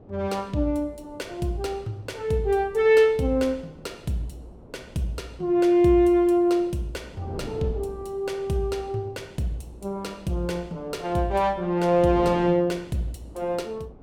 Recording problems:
wind noise; below 450 Hz, SNR 20 dB

